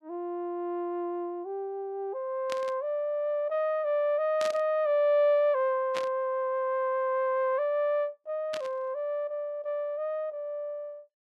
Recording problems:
burst of static; 4 times, first at 2.5 s; peak -3 dB vs average level

